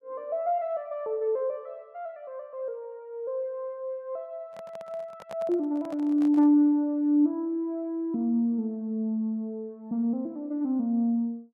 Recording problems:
microphone handling noise; from 4.5 to 6.5 s; peak -10 dB vs average level

